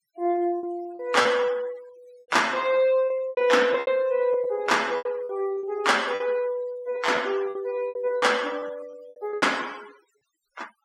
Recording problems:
noise reduction artefacts; signal-to-artefact ratio 21 dB
packet loss; 11% of the sound replaced, filled with repeated pitch periods

